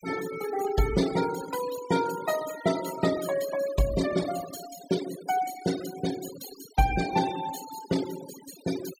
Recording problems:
denoising artefacts; signal-to-artefact ratio 10 dB

